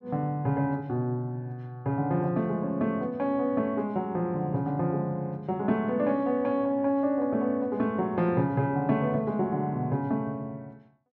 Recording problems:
none

